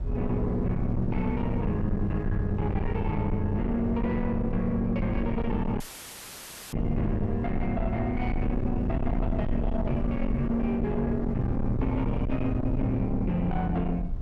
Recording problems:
distortion; soft clipping, signal-to-distortion ratio 7 dB
rumble; below 140 Hz, SNR 4 dB
dropout; at 6 s for 1 s; filled with static

